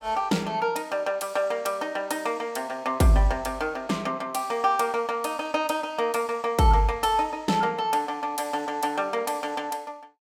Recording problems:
none

